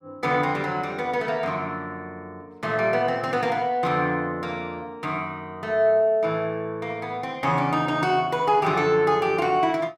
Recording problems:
none

